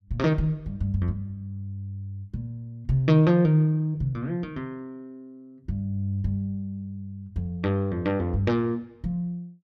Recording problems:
none

